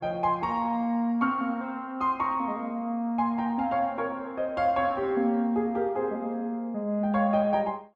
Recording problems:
none

